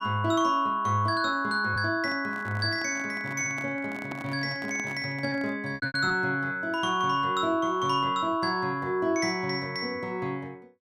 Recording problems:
lost packets; 2% of the sound replaced, filled with repeated pitch periods
microphone handling noise; from 2 to 5.5 s; peak -7 dB vs average level

